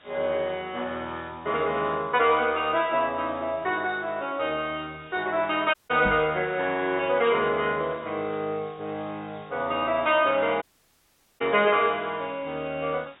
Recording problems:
low-pass filter; nothing above 4 kHz
hiss; SNR 27 dB
audio cutting out; at 5.5 s and at 11 s for 1 s
microphone thump; at 6 s; peak -3 dB vs average level

